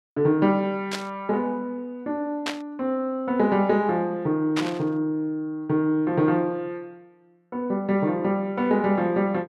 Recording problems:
burst of static; at 1 s, at 2.5 s and at 4.5 s; peak 0 dB vs average level

